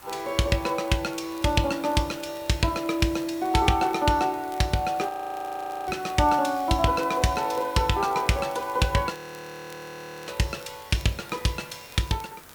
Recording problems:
hiss; SNR 21 dB
crackle; vinyl, SNR 28 dB
frozen audio; at 5 s for 1 s and at 9 s for 1 s

